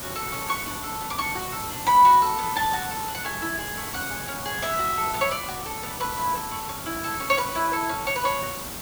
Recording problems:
background hiss; SNR 7 dB

